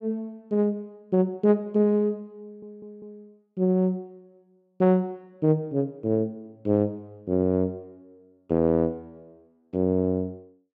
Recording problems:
stutter; at 2.5 s

